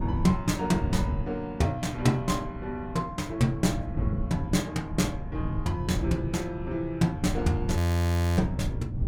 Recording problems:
wind on the microphone; below 140 Hz, SNR 4 dB
frozen audio; at 8 s for 0.5 s

